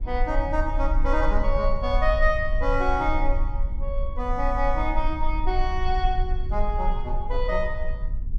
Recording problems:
low-frequency rumble; below 42 Hz, strongest tone 24 Hz, SNR 2 dB

